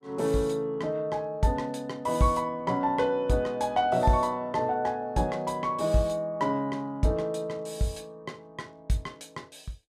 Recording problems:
none

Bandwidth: 14 kHz